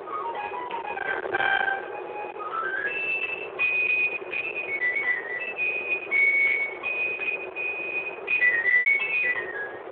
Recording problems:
phone line; 320 Hz to 3.9 kHz, Speex
distortion; hard clipping, uneven, signal-to-distortion ratio 12 dB
wind on the microphone; below 2.2 kHz, SNR 10 dB
packet loss; 0.9% of the sound replaced, filled with repeated pitch periods

